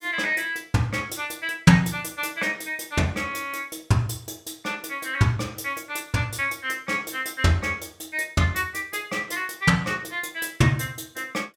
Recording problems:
none

